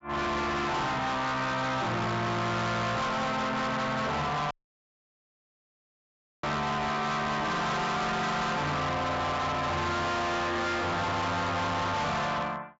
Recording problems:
low-pass filter; nothing above 8 kHz
distorted audio; hard clipping, signal-to-distortion ratio 6 dB
dropout; at 4.5 s for 2 s

